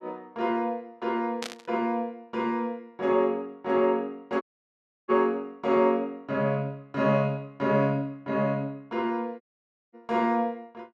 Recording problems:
static burst; at 1.5 s; peak -3 dB vs average level
dropout; at 4.5 s for 0.5 s and at 9.5 s for 0.5 s

